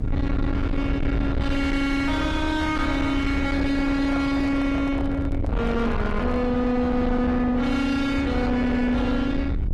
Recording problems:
codec artefacts; Opus, log-spectral distance 2 dB, nothing above 17.7 kHz
distorted audio; soft clipping, signal-to-distortion ratio 7 dB
rumble; below 280 Hz, SNR 4 dB
handling noise; from 4 to 6.5 s; peak -6 dB vs average level

